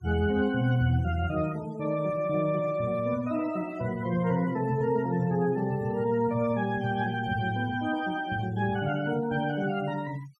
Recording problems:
noise reduction artefacts; signal-to-artefact ratio 22 dB

